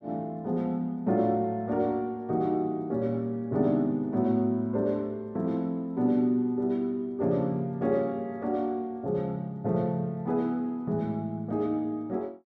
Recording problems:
none

